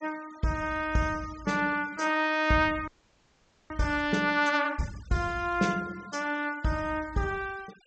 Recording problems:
treble missing; nothing above 8 kHz
noise reduction artefacts; signal-to-artefact ratio 22 dB
audio freezing; at 3 s for 1 s

